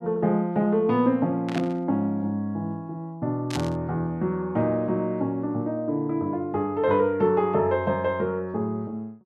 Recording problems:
burst of static; at 1.5 s and at 3.5 s; peak -4 dB vs average level

